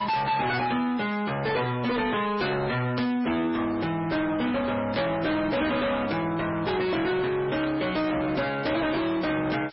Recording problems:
lossy codec; MP3, log-spectral distance 9 dB, nothing above 5.3 kHz
distortion; soft clipping, signal-to-distortion ratio 6 dB
hiss; SNR 24 dB
static burst; at 3 s, at 5 s and at 7.5 s; peak -5 dB vs average level

